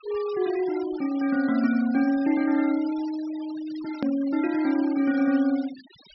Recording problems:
treble missing; nothing above 5.6 kHz
denoising artefacts; signal-to-artefact ratio 19 dB
click at an edit; at 4 s

